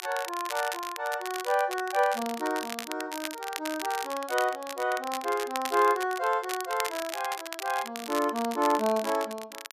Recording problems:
crackle; vinyl, SNR 9 dB

